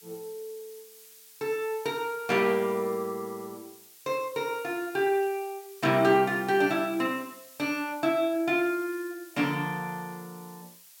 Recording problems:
hiss; slope +4 dB per octave, SNR 21 dB

